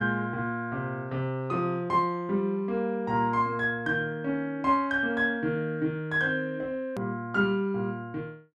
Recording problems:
click at an edit; at 7 s

